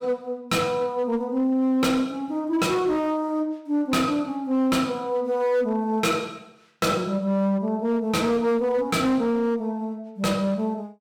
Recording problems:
distortion; hard clipping, signal-to-distortion ratio 12 dB

